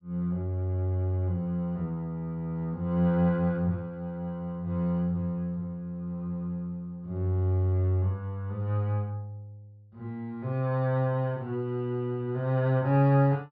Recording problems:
low-pass filter; nothing above 5.2 kHz

